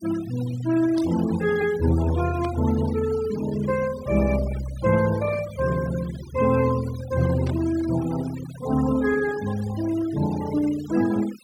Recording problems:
noise reduction artefacts; signal-to-artefact ratio 15 dB
static burst; at 1 s, at 2.5 s and at 7.5 s; peak -12 dB vs average level

